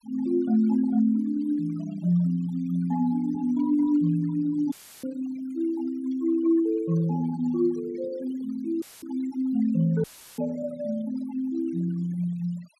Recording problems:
noise reduction artefacts; signal-to-artefact ratio 20 dB
audio cutting out; at 4.5 s, at 9 s and at 10 s; filled with static

